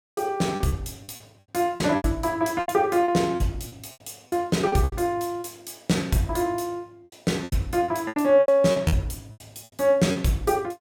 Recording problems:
lost packets; 13% of the sound replaced, filled with repeated pitch periods

